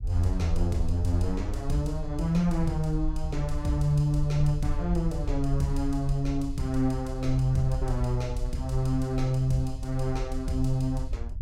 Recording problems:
rumble; below 60 Hz, SNR 6 dB

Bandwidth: 16 kHz